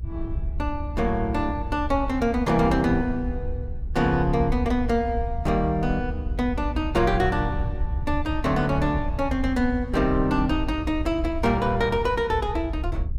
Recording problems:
low-frequency rumble; below 72 Hz, SNR 6 dB

